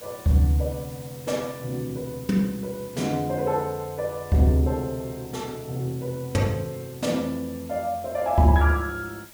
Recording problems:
background hiss; slope -1 dB per octave, SNR 19 dB

